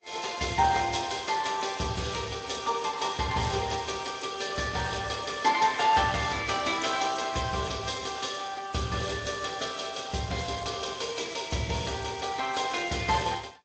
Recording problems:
codec artefacts; Speex, then AAC, log-spectral distance 10 dB, nothing above 7.3 kHz
crackling; from 2 to 4 s, at 7.5 s and from 11 to 13 s; loose cable, SNR 27 dB

